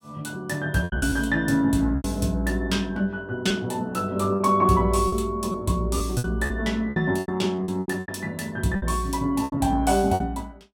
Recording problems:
packet loss; 10% of the sound replaced, filled with repeated pitch periods

